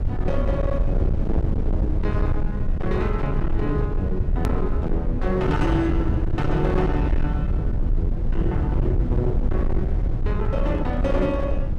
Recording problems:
distorted audio; hard clipping, signal-to-distortion ratio 10 dB
hum; 60 Hz, harmonics up to 660 Hz, SNR 14 dB
low-frequency rumble; below 96 Hz, SNR -1 dB
hard cut with a click; at 4.5 s

